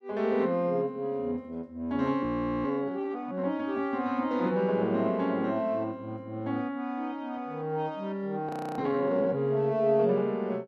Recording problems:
audio freezing; at 2 s and at 8.5 s

